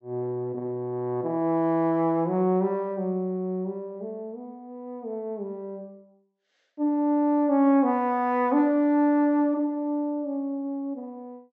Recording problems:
treble missing; nothing above 7.9 kHz

